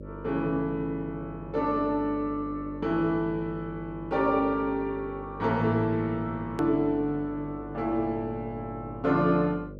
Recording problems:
hum; 50 Hz, harmonics up to 600 Hz, SNR 14 dB
hard cut with a click; at 6.5 s

